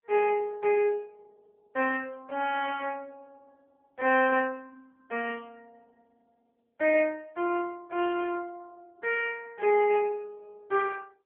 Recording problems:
telephone audio; 280 Hz to 3.3 kHz, AMR-NB

